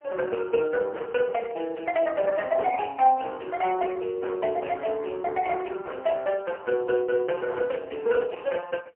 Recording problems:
phone line; 300 Hz to 3 kHz, AMR-NB, then MP3

